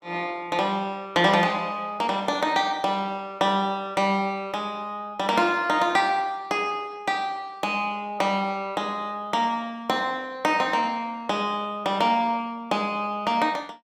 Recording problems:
none

